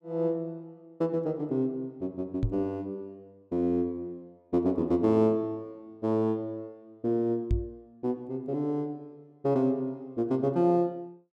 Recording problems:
knock on the microphone; at 2.5 s and at 7.5 s; peak +5 dB vs average level

